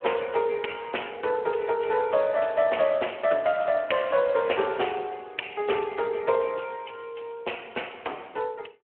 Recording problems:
phone line; 320 Hz to 3.2 kHz, Speex

